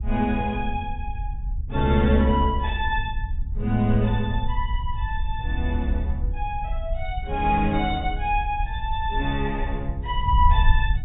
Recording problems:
treble missing; nothing above 4 kHz
wind noise; below 68 Hz, SNR 4 dB

